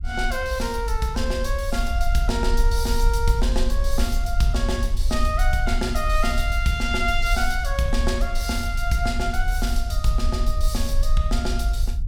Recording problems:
low-frequency rumble; below 52 Hz, SNR 0 dB

